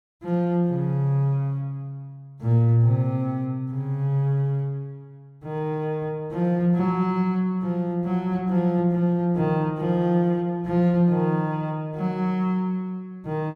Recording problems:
none

